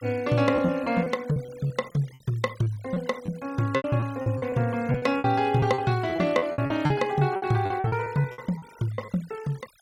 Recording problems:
noise reduction artefacts; signal-to-artefact ratio 22 dB
packet loss; 14% of the sound replaced, filled with repeated pitch periods

